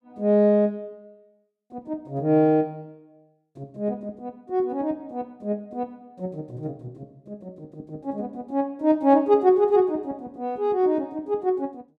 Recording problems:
none

